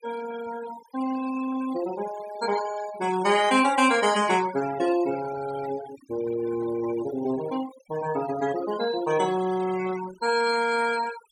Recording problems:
denoising artefacts; signal-to-artefact ratio 14 dB

